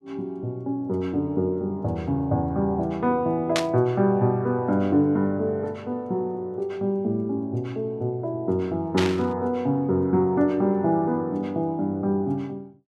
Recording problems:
static burst; at 3.5 s and at 9 s; peak +3 dB vs average level

